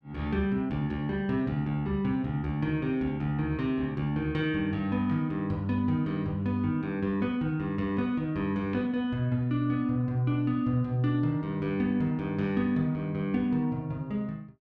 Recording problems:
none

